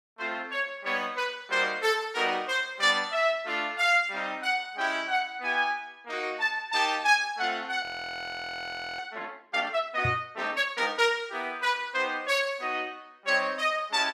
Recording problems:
audio freezing; at 8 s for 1 s
microphone bump; at 10 s; peak -1 dB vs average level

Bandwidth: 16 kHz